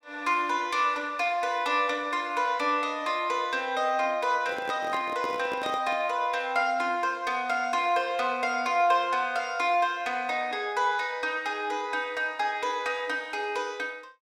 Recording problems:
handling noise; from 4.5 to 6 s; peak -6 dB vs average level

